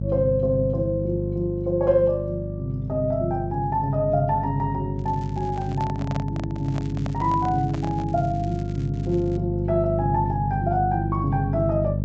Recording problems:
treble missing; nothing above 8 kHz
hum; 50 Hz, harmonics up to 450 Hz, SNR 4 dB
crackling; at 5 s and from 6.5 to 9.5 s; loose cable, SNR 27 dB
handling noise; from 5.5 to 8 s; peak -4 dB vs average level

